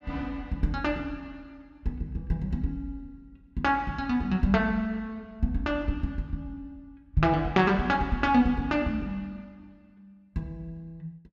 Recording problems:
none

